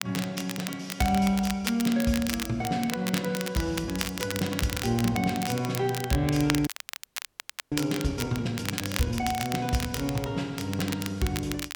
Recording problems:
crackle; vinyl, SNR 7 dB
frozen audio; at 6.5 s for 1 s

